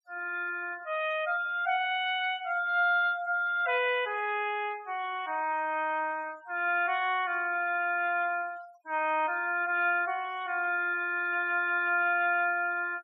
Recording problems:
denoising artefacts; signal-to-artefact ratio 25 dB

